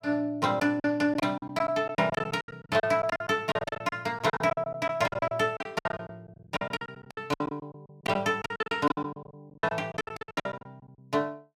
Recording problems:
lost packets; 22% of the sound replaced, filled with silence

